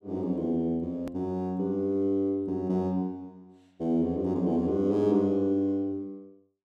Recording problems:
edit click; at 1 s

